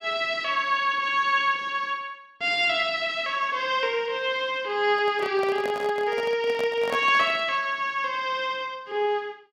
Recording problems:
handling noise; from 5 to 7.5 s; peak -3 dB vs average level

